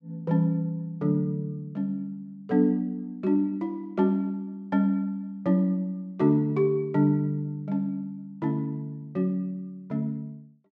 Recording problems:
none

